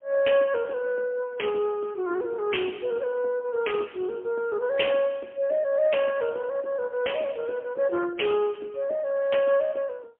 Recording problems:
phone line; 300 Hz to 3.3 kHz, AMR-NB, then MP3

